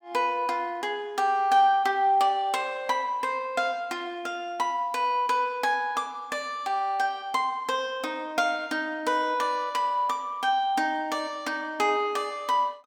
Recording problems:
none

